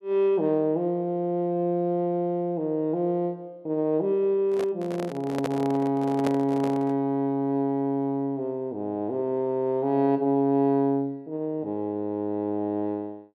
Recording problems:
microphone handling noise; from 4.5 to 7 s; peak 0 dB vs average level

